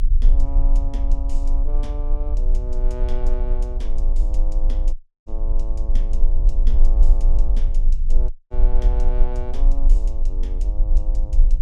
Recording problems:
hum; 60 Hz, harmonics up to 480 Hz, SNR 21 dB
rumble; below 38 Hz, strongest tone 26 Hz, SNR -14 dB
dropout; at 5 s and at 8.5 s

